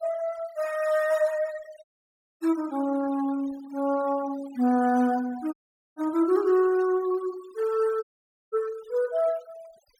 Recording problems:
noise reduction artefacts; signal-to-artefact ratio 20 dB
dropout; at 2 s for 0.5 s, at 5.5 s and at 8 s

